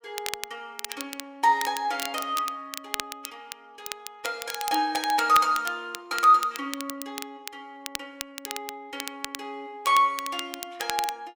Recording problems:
crackle; vinyl, SNR 11 dB

